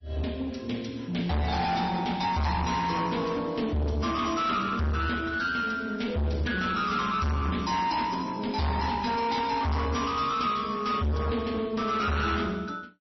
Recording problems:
lossy codec; MP3, log-spectral distance 4 dB, nothing above 5.7 kHz
distorted audio; soft clipping, signal-to-distortion ratio 5 dB

